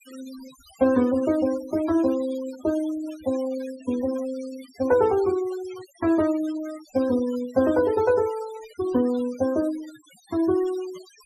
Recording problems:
noise reduction artefacts; signal-to-artefact ratio 19 dB

